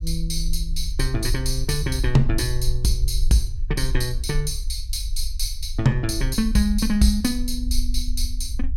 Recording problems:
low-frequency rumble; below 46 Hz, SNR 4 dB

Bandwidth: 16 kHz